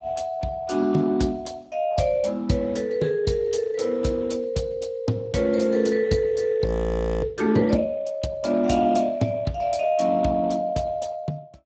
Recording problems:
codec artefacts; Speex, log-spectral distance 3 dB, nothing above 7.8 kHz
frozen audio; at 6.5 s for 0.5 s

